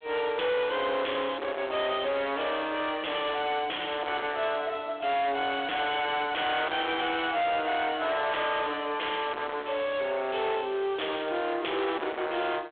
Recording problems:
phone line; 280 Hz to 3.6 kHz, G.726
distortion; hard clipping, uneven, signal-to-distortion ratio 5 dB

